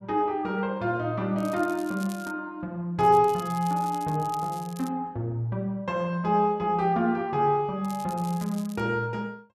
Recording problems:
crackling; at 1.5 s, from 3 to 5 s and at 8 s; loose cable, SNR 20 dB

